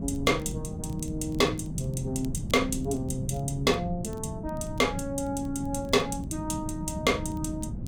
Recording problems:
wind noise; below 200 Hz, SNR 7 dB
crackling; vinyl, SNR 28 dB

